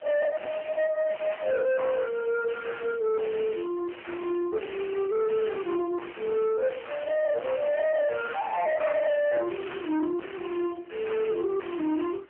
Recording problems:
phone line; 190 Hz to 3 kHz, AMR-NB
distorted audio; soft clipping, signal-to-distortion ratio 6 dB
hiss; SNR 30 dB

